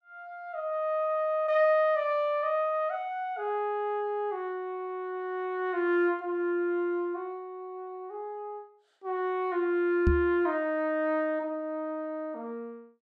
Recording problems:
microphone bump; at 10 s; peak +7 dB vs average level

